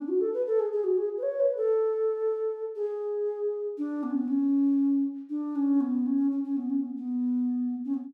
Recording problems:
none

